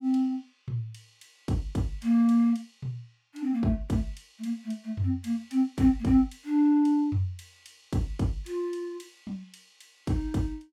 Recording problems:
none

